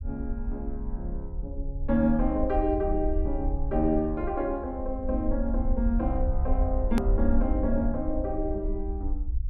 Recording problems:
rumble; below 60 Hz, SNR 3 dB
hard cut with a click; at 7 s

